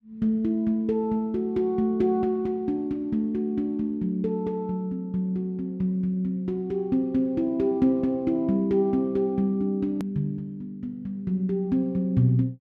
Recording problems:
hard cut with a click; at 10 s

